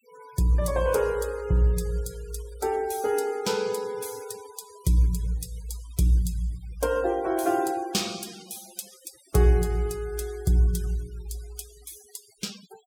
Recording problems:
noise reduction artefacts; signal-to-artefact ratio 21 dB

